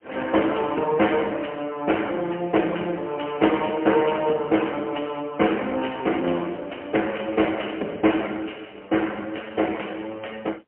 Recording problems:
telephone audio; 240 Hz to 3.1 kHz, AMR-NB, then MP3

